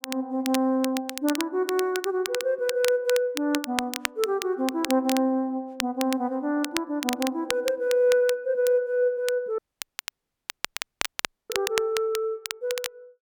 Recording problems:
crackling; vinyl, SNR 8 dB
dropout; at 9.5 s for 2 s

